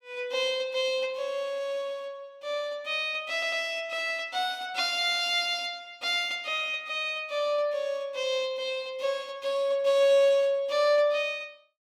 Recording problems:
stutter; at 3.5 s

